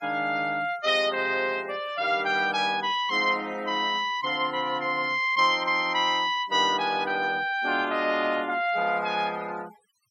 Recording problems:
denoising artefacts; signal-to-artefact ratio 21 dB

